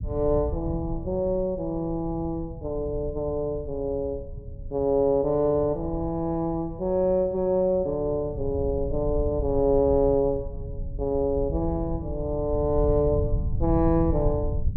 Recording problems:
low-frequency rumble; below 110 Hz, SNR 9 dB

